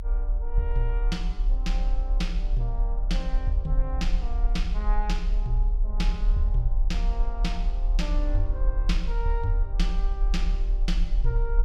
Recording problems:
low-frequency rumble; below 38 Hz, strongest tone 34 Hz, SNR -6 dB

